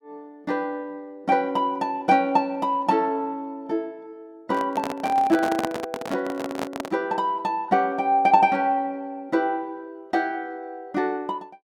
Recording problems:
handling noise; from 4.5 to 7 s; peak +1 dB vs average level

